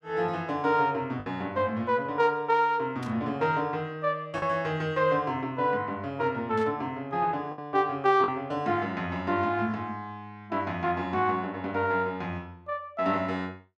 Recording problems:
packet loss; 1.5% of the sound replaced, filled with the last packet
burst of static; at 3 s and at 6.5 s; peak -13 dB vs average level

